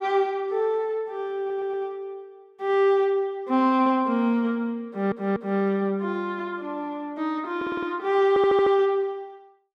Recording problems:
audio stuttering; 4 times, first at 1.5 s

